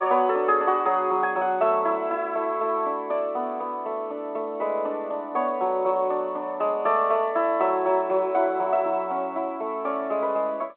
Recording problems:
telephone audio; 220 Hz to 3.7 kHz, G.711

